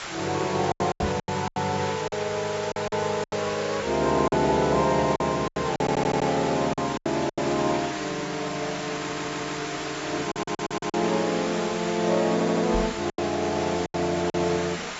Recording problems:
lossy codec; AAC, log-spectral distance 14 dB, nothing above 7.3 kHz
background hiss; SNR 6 dB
lost packets; 9% of the sound replaced, filled with silence
microphone thump; at 1 s and at 13 s; peak 0 dB vs average level
stutter; 4 times, first at 6 s

